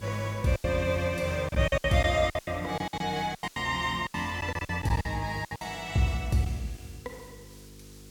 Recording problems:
hum; 50 Hz, harmonics up to 500 Hz, SNR 22 dB
background hiss; slope +1 dB per octave, SNR 23 dB
lost packets; 13% of the sound replaced, filled with silence

